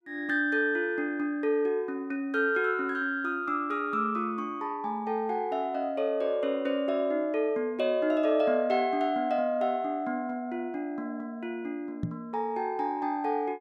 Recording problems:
microphone bump; at 12 s; peak +1 dB vs average level

